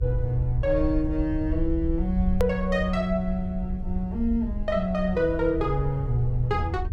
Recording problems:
hum; 50 Hz, harmonics up to 450 Hz, SNR 21 dB
low-frequency rumble; below 76 Hz, SNR 6 dB
click at an edit; at 2.5 s

